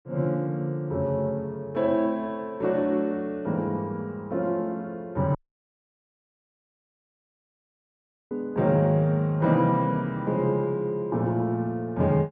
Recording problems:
audio cutting out; at 5.5 s for 3 s

